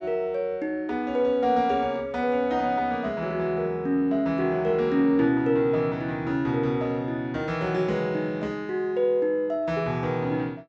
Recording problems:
treble cut off; nothing above 8 kHz

